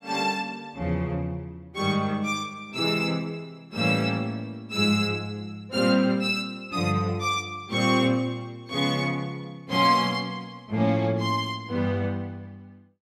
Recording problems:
none

